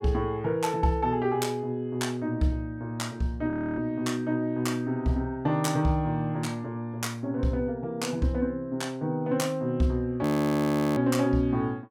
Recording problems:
frozen audio; at 3.5 s and at 10 s for 0.5 s

